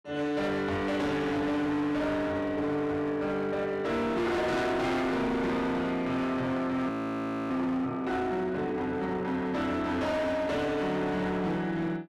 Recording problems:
distortion; hard clipping, signal-to-distortion ratio 8 dB
frozen audio; at 7 s for 0.5 s

